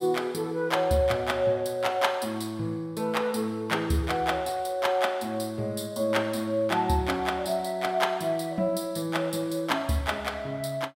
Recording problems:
none

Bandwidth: 16 kHz